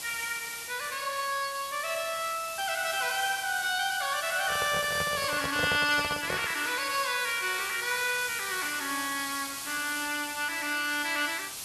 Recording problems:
background hiss; SNR 8 dB
microphone handling noise; from 4.5 to 6.5 s; peak +1 dB vs average level

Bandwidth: 12.5 kHz